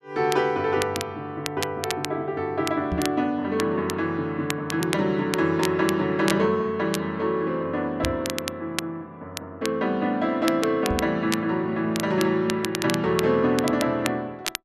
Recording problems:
crackle; vinyl, SNR 10 dB
knock on the microphone; at 3 s, at 8 s and at 11 s; peak -1 dB vs average level

